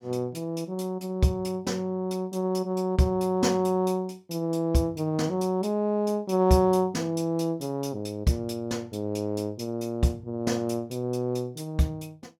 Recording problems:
none

